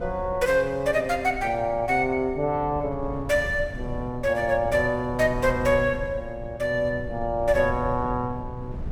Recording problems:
wind noise; below 120 Hz, SNR 13 dB

